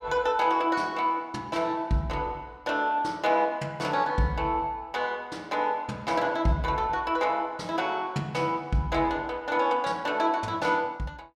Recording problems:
none

